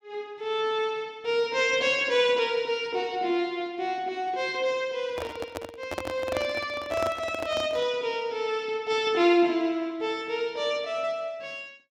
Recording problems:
microphone handling noise; from 5 to 8 s; peak -1 dB vs average level

